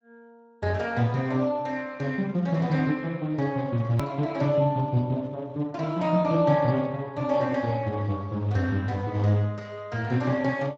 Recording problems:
lossy codec; Speex, log-spectral distance 3 dB, nothing above 19.5 kHz
hard cut with a click; at 4 s

